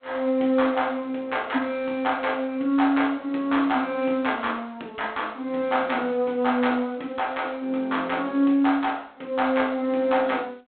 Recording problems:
telephone audio; 190 Hz to 3.6 kHz, G.726

